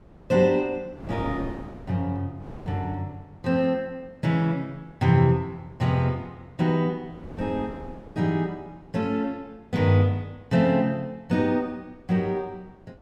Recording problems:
wind noise; below 430 Hz, SNR 19 dB

